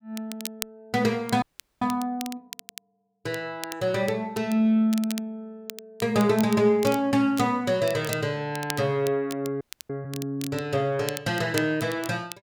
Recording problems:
crackling; vinyl, SNR 14 dB
audio freezing; at 1.5 s and at 9.5 s

